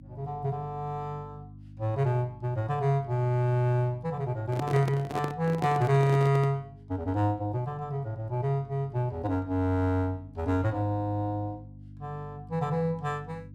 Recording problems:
hum; 50 Hz, harmonics up to 300 Hz, SNR 19 dB
microphone handling noise; from 4.5 to 6.5 s; peak -1 dB vs average level

